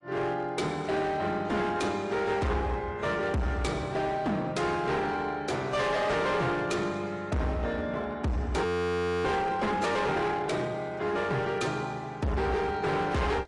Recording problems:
lossy codec; AAC, log-spectral distance 3 dB, nothing above 10.4 kHz
distorted audio; hard clipping, signal-to-distortion ratio 8 dB
audio freezing; at 8.5 s for 0.5 s

